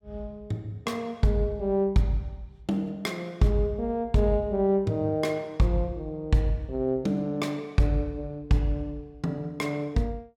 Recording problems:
none

